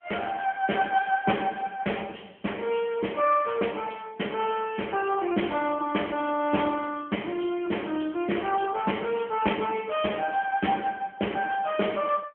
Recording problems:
phone line; 240 Hz to 3.2 kHz, AMR-NB

